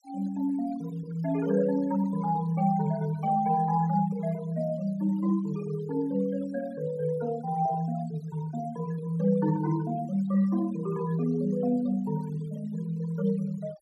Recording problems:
denoising artefacts; signal-to-artefact ratio 21 dB

